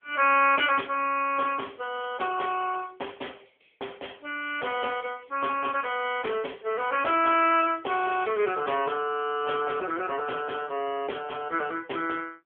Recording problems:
phone line; 300 Hz to 3.3 kHz, AMR-NB

